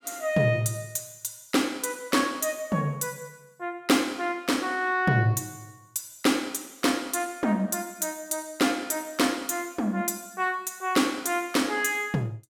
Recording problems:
none

